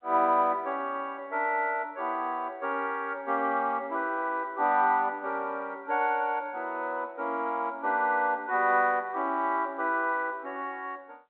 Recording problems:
telephone audio; 240 Hz to 3.3 kHz, G.711

